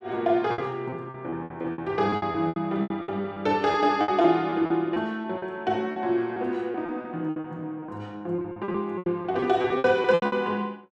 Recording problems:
lost packets; 16% of the sound replaced, filled with repeated pitch periods

